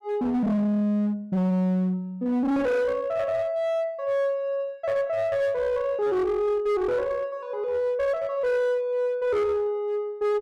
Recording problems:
distortion; hard clipping, uneven, signal-to-distortion ratio 9 dB

